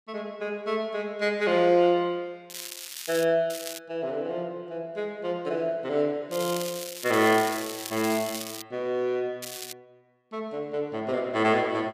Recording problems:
crackle; 4 times, first at 2.5 s; loose cable, SNR 10 dB

